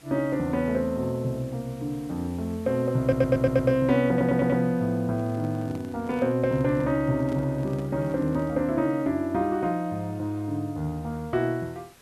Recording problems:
hiss; slope -2 dB per octave, SNR 27 dB
stutter; at 3 s and at 4 s
microphone handling noise; from 5 to 8.5 s; peak -7 dB vs average level

